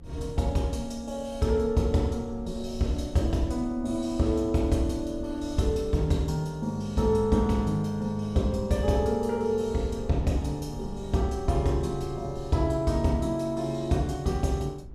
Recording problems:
low-frequency rumble; below 100 Hz, SNR 16 dB

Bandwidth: 14.5 kHz